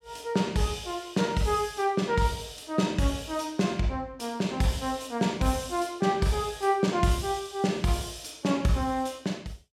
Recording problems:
none

